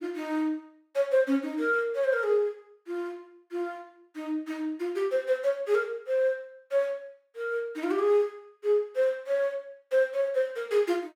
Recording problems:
none

